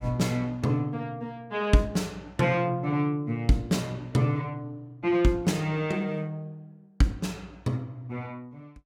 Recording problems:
none

